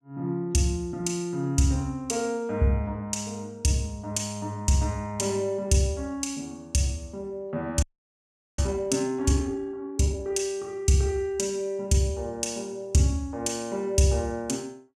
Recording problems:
frozen audio; at 8 s for 1 s

